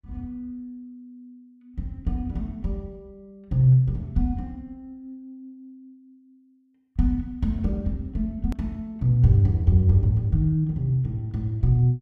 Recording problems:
edit click; at 8.5 s

